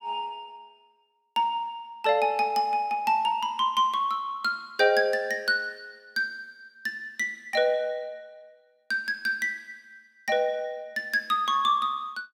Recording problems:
none

